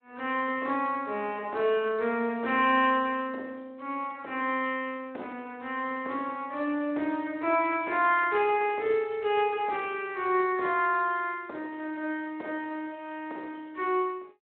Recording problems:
phone line; 240 Hz to 3.1 kHz, Speex

